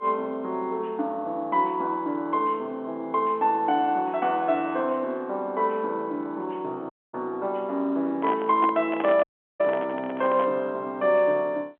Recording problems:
telephone audio; 240 Hz to 3.6 kHz, G.711
dropout; at 7 s and at 9 s
microphone handling noise; from 8 to 11 s; peak -2 dB vs average level

